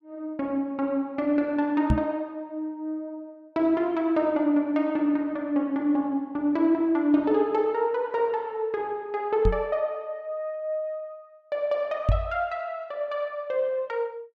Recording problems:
knock on the microphone; at 2 s, at 9.5 s and at 12 s; peak +7 dB vs average level

